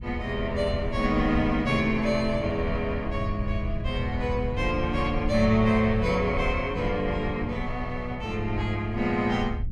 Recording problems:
wind noise; below 90 Hz, SNR 8 dB

